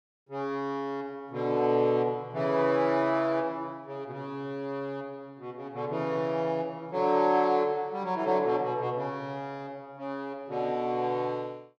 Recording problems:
none

